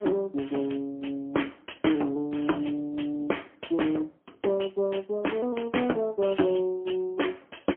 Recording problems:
phone line; 220 Hz to 3.2 kHz, AMR-NB, then MP3

